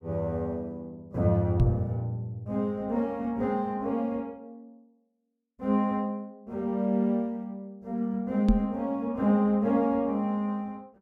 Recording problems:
microphone bump; at 1.5 s and at 8.5 s; peak +8 dB vs average level

